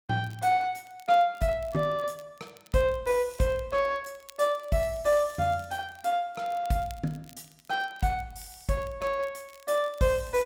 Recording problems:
crackle; vinyl, SNR 27 dB

